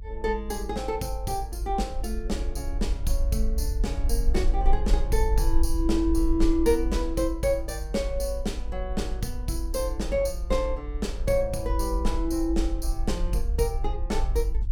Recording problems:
rumble; below 50 Hz, SNR 2 dB

